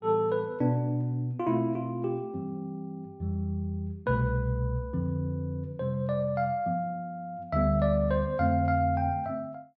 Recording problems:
none

